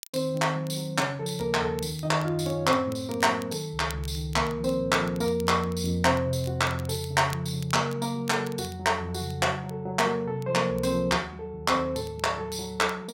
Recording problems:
crackling; vinyl, SNR 22 dB

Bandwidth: 16 kHz